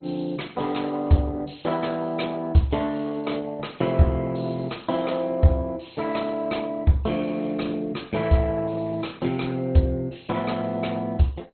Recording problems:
lossy compression; Opus, then MP2, log-spectral distance 5 dB, nothing above 4.2 kHz

